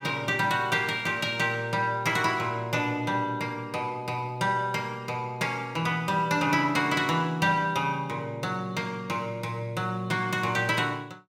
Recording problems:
none

